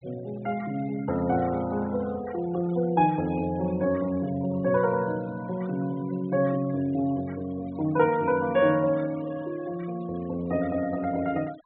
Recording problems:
low-pass filter; nothing above 4 kHz
noise reduction artefacts; signal-to-artefact ratio 21 dB

